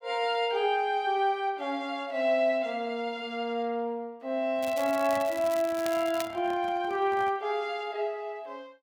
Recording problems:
handling noise; from 4.5 to 7.5 s; peak -10 dB vs average level
crackle; from 4.5 to 6.5 s; loose cable, SNR 15 dB

